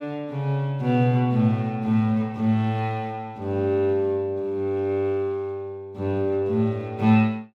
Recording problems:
none

